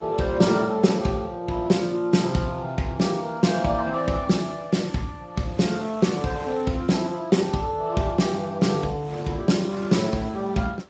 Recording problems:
codec artefacts; Speex, log-spectral distance 4 dB, nothing above 7.6 kHz
wind noise; below 2.1 kHz, SNR 22 dB

